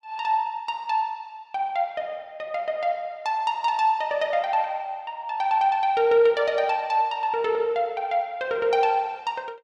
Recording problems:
none

